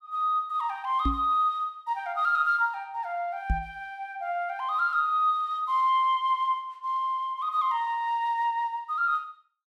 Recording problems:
knock on the microphone; at 1 s and at 3.5 s; peak +2 dB vs average level

